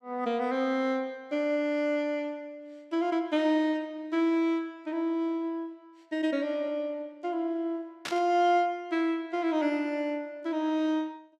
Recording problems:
burst of static; at 8 s; peak -2 dB vs average level

